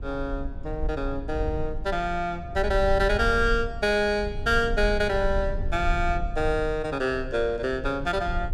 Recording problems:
low-frequency rumble; below 64 Hz, SNR 8 dB

